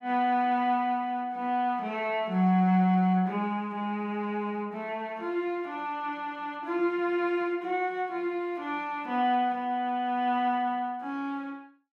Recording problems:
none

